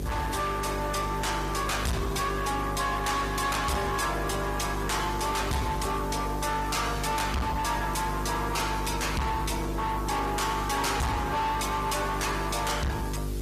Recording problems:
lossy compression; Opus, log-spectral distance 5 dB, nothing above 14.7 kHz
distortion; soft clipping, signal-to-distortion ratio 7 dB
electrical hum; 50 Hz, harmonics up to 450 Hz, SNR 5 dB
hiss; slope -1 dB per octave, SNR 18 dB

